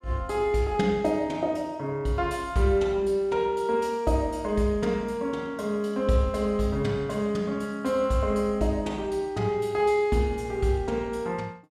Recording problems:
none

